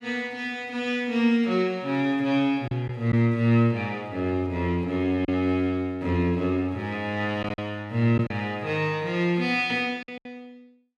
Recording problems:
packet loss; 3% of the sound replaced, filled with silence

